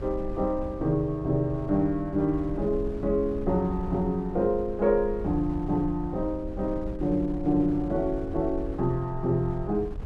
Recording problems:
wind noise; below 92 Hz, SNR 12 dB

